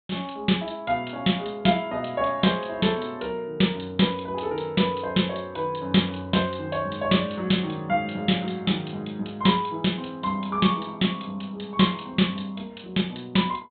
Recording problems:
treble cut off; nothing above 4 kHz

